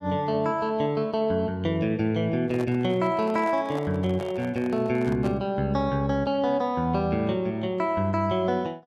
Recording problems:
microphone handling noise; from 2.5 to 5.5 s; peak -8 dB vs average level

